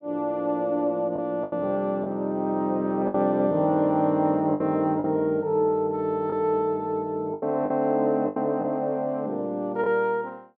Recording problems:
lost packets; 5% of the sound replaced, filled with the last packet

